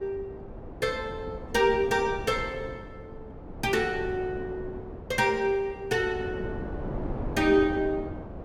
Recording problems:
wind on the microphone; below 420 Hz, SNR 11 dB

